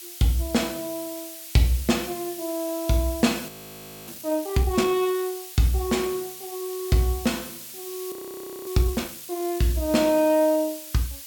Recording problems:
hiss; slope +5 dB per octave, SNR 12 dB
frozen audio; at 3.5 s for 0.5 s and at 8 s for 0.5 s

